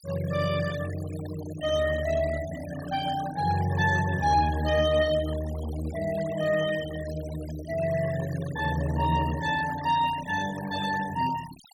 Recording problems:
denoising artefacts; signal-to-artefact ratio 15 dB

